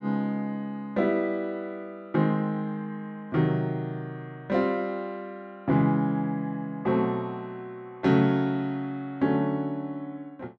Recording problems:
none

